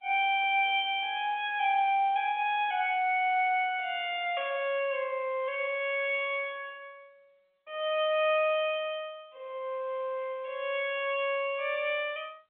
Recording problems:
phone line; 280 Hz to 3.5 kHz, G.711

